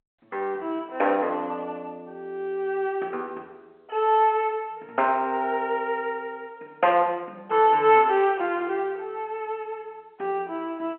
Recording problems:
telephone audio; 300 Hz to 3.3 kHz, G.711

